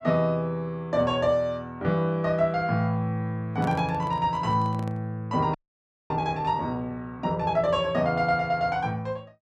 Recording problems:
microphone handling noise; from 3.5 to 5 s; peak -7 dB vs average level
audio freezing; at 5.5 s for 0.5 s

